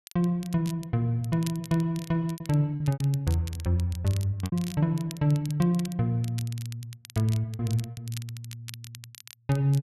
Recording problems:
crackle; vinyl, SNR 18 dB
packet loss; 5% of the sound replaced, filled with repeated pitch periods

